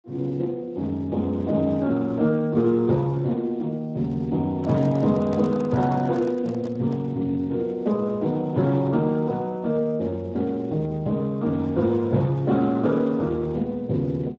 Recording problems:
lossy compression; Speex, log-spectral distance 2 dB
microphone handling noise; from 4.5 to 7 s; peak -9 dB vs average level

